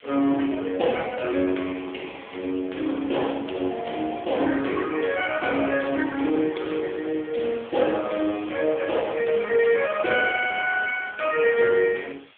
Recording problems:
telephone audio; 240 Hz to 3.4 kHz, AMR-NB
hiss; SNR 28 dB

